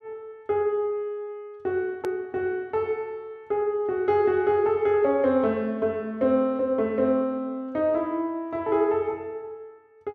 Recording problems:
click at an edit; at 2 s

